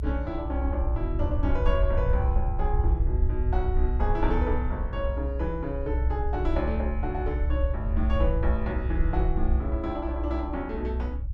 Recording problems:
low-frequency rumble; below 66 Hz, SNR -3 dB

